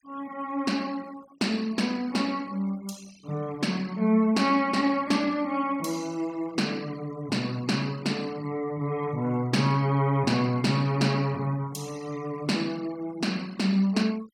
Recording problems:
denoising artefacts; signal-to-artefact ratio 22 dB

